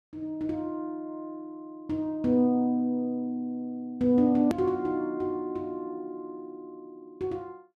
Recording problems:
click at an edit; at 4.5 s

